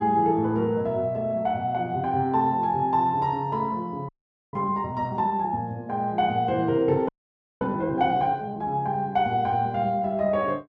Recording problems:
frozen audio; at 4 s and at 7 s for 0.5 s

